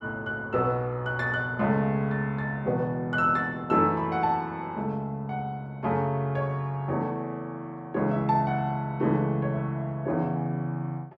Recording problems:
none

